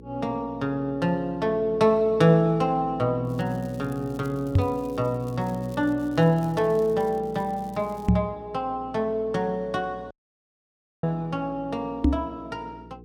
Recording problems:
hum; 60 Hz, harmonics up to 480 Hz, SNR 19 dB
crackling; from 3.5 to 8 s; loose cable, SNR 28 dB
microphone bump; at 4.5 s, at 8 s and at 12 s; peak +8 dB vs average level
dropout; at 10 s for 1 s

